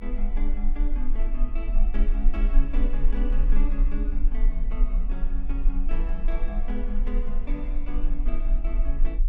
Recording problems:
rumble; below 34 Hz, strongest tone 22 Hz, SNR -9 dB

